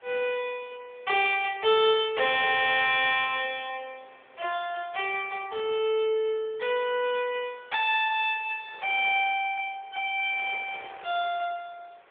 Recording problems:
telephone audio; 280 Hz to 3.6 kHz, AMR-NB
wind on the microphone; below 2.2 kHz, SNR 25 dB

